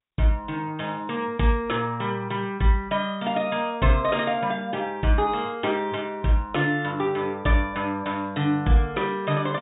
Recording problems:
treble cut off; nothing above 3.8 kHz
codec artefacts; G.722, log-spectral distance 2 dB

